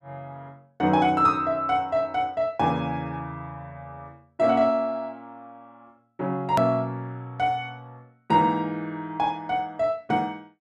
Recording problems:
hard cut with a click; at 6.5 s

